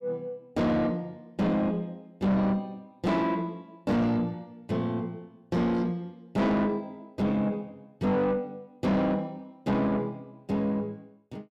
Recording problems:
distorted audio; soft clipping, signal-to-distortion ratio 7 dB

